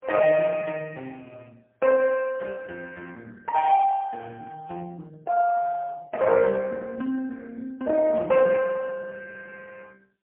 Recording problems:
phone line; 280 Hz to 2.6 kHz, AMR-NB, then MP3

